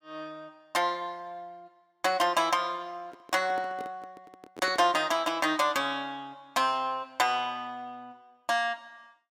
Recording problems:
microphone handling noise; from 3 to 5 s; peak -8 dB vs average level

